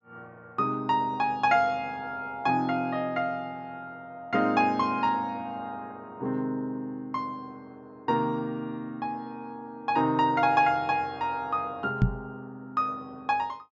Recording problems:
treble missing; nothing above 8 kHz
microphone thump; at 12 s; peak +9 dB vs average level

